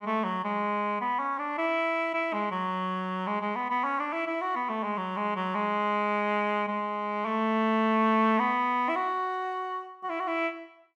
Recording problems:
none

